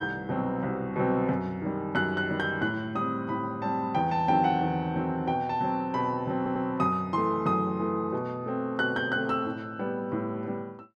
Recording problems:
audio stuttering; at 6.5 s

